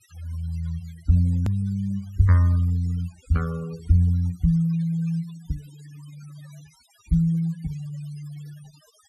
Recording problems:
noise reduction artefacts; signal-to-artefact ratio 25 dB
click at an edit; at 1.5 s

